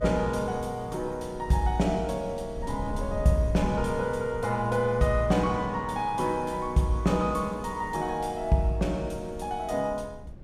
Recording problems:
wind noise; below 120 Hz, SNR 15 dB

